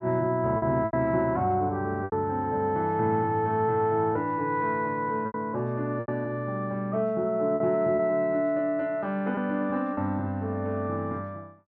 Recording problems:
lost packets; 5% of the sound replaced, filled with repeated pitch periods

